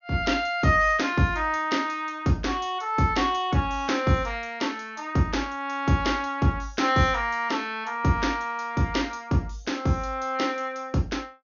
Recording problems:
treble missing; nothing above 6.7 kHz

